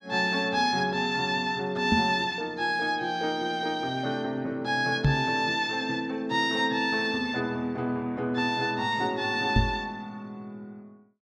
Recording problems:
microphone thump; at 2 s, at 5 s and at 9.5 s; peak +7 dB vs average level

